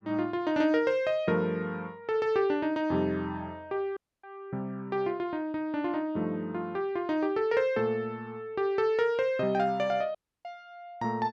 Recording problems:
dropout; at 4 s and at 10 s

